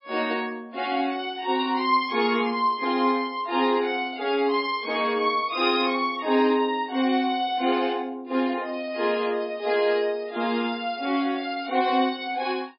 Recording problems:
lossy compression; MP3, log-spectral distance 2 dB, nothing above 4.9 kHz

